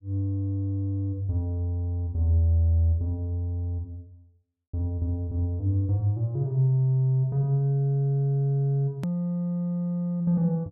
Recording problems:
hard cut with a click; at 9 s

